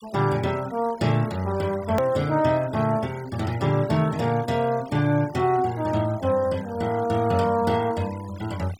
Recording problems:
denoising artefacts; signal-to-artefact ratio 21 dB
edit click; at 2 s

